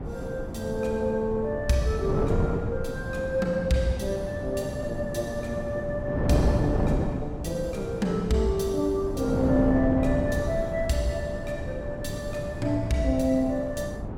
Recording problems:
wind noise; below 360 Hz, SNR 3 dB

